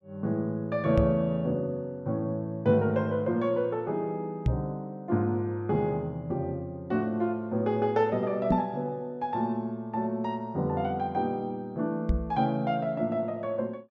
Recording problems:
microphone thump; 4 times, first at 1 s; peak +7 dB vs average level

